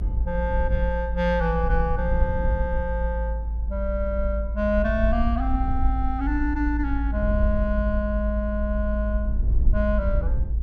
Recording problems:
rumble; below 56 Hz, strongest tone 54 Hz, SNR -1 dB

